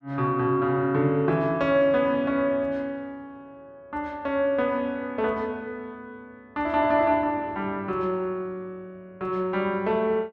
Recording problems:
none

